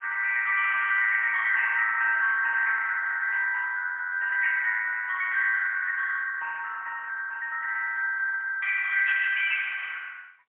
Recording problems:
telephone audio; 990 Hz to 2.3 kHz, AMR-NB, then MP3

